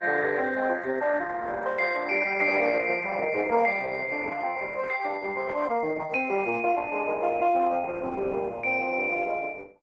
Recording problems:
lossy compression; Opus, log-spectral distance 4 dB, nothing above 7.8 kHz

